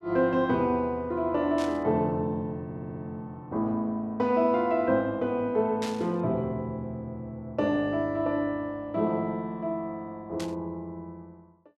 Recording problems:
static burst; at 1.5 s, at 6 s and at 10 s; peak -5 dB vs average level
stutter; at 2.5 s

